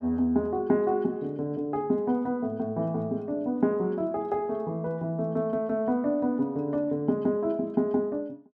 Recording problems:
none

